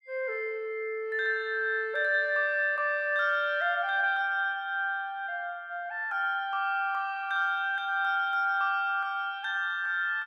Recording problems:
none

